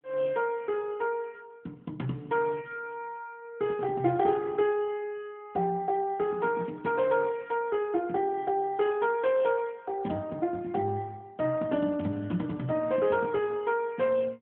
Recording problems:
telephone audio; 150 Hz to 3.7 kHz, AMR-NB

